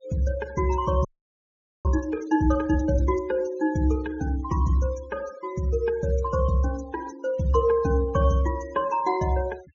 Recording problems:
treble missing; nothing above 7.1 kHz
denoising artefacts; signal-to-artefact ratio 21 dB
audio freezing; at 1 s for 1 s

